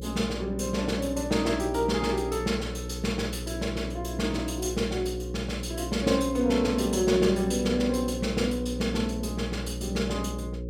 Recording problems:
electrical hum; 60 Hz, harmonics up to 540 Hz, SNR 8 dB

